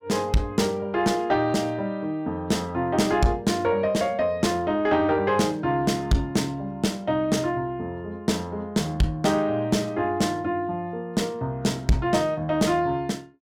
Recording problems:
distortion; soft clipping, signal-to-distortion ratio 10 dB

